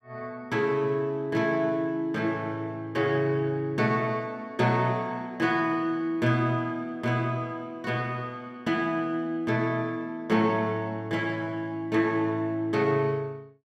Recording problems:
none

